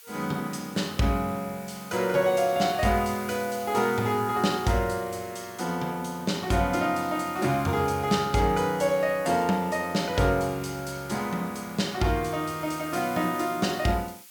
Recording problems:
background hiss; slope +4 dB per octave, SNR 19 dB

